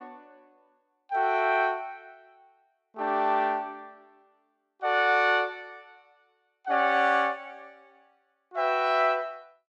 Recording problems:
none

